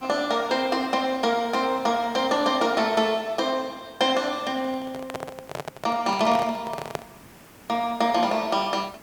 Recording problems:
background hiss; slope -5 dB per octave, SNR 24 dB
microphone handling noise; from 4.5 to 7 s; peak -1 dB vs average level

